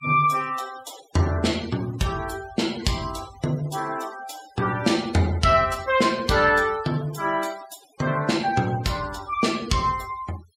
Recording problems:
denoising artefacts; signal-to-artefact ratio 18 dB

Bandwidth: 16 kHz